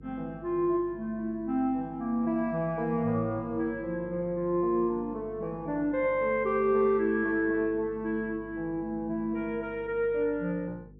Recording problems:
electrical hum; 50 Hz, harmonics up to 500 Hz, SNR 21 dB

